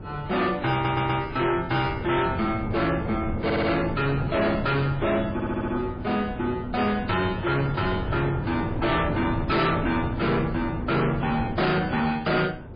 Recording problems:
lossy compression; MP3, log-spectral distance 3 dB, nothing above 4.2 kHz
distorted audio; hard clipping, uneven, signal-to-distortion ratio 7 dB
wind noise; below 380 Hz, SNR 7 dB
audio stuttering; at 0.5 s, at 3.5 s and at 5.5 s

